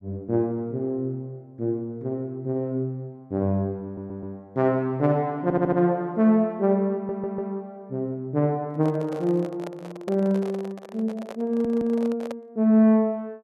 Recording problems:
stutter; 4 times, first at 4 s
microphone handling noise; from 8.5 to 13 s; peak -6 dB vs average level

